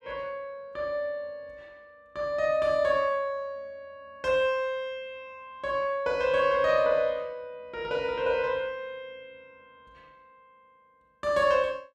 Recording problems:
none

